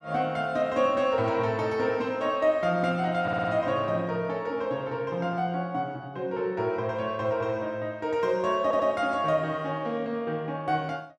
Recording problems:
stutter; at 3 s and at 8.5 s

